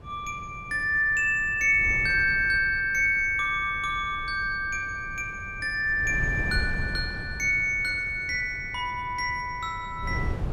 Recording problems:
wind noise; below 150 Hz, SNR 14 dB

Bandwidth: 17 kHz